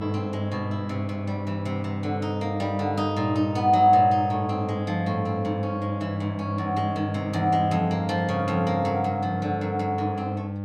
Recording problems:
electrical hum; 50 Hz, harmonics up to 1.1 kHz, SNR 5 dB

